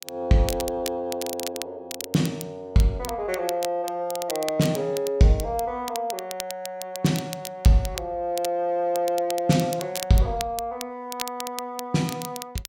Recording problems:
crackling; vinyl, SNR 11 dB

